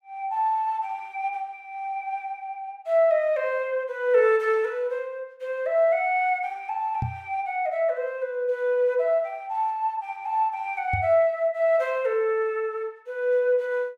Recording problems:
knock on the microphone; at 7 s and at 11 s; peak 0 dB vs average level

